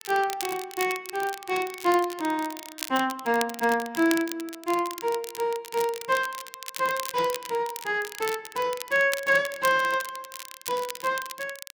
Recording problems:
crackling; vinyl, SNR 11 dB

